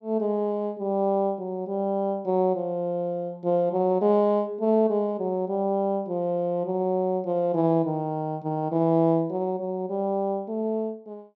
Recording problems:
none

